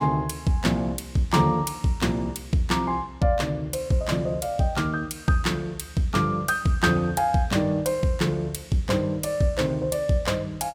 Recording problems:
none

